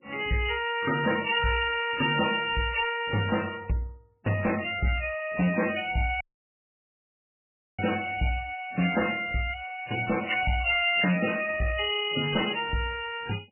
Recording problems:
lossy codec; MP3, log-spectral distance 8 dB, nothing above 2.5 kHz
distortion; hard clipping, signal-to-distortion ratio 11 dB
audio cutting out; at 6 s for 1.5 s

